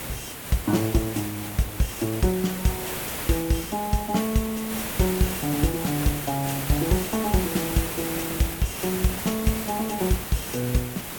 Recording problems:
background hiss; slope -3 dB per octave, SNR 4 dB

